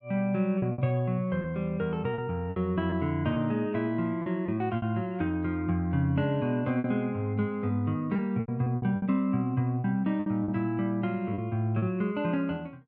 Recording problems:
lost packets; 7% of the sound replaced, filled with repeated pitch periods

